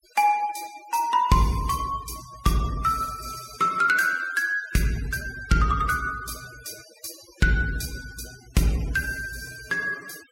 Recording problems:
noise reduction artefacts; signal-to-artefact ratio 19 dB

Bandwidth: 16 kHz